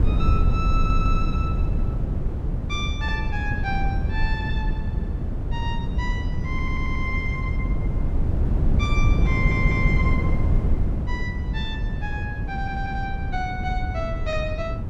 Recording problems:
wind noise; below 120 Hz, SNR -5 dB
stutter; 4 times, first at 1 s

